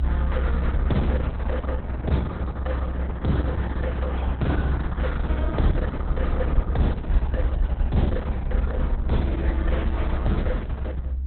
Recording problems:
lossy codec; Opus, log-spectral distance 2 dB, nothing above 4 kHz
hum; 60 Hz, harmonics up to 300 Hz, SNR 21 dB
rumble; below 66 Hz, strongest tone 64 Hz, SNR -1 dB

